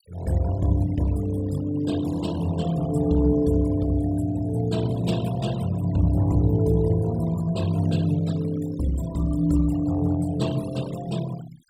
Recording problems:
noise reduction artefacts; signal-to-artefact ratio 19 dB

